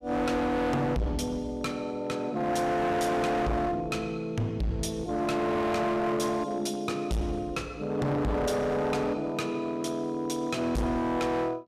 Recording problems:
distorted audio; hard clipping, uneven, signal-to-distortion ratio 6 dB

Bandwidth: 14.5 kHz